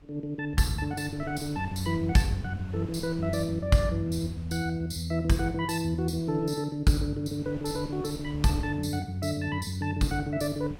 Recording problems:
wind on the microphone; below 190 Hz, SNR 19 dB

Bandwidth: 16.5 kHz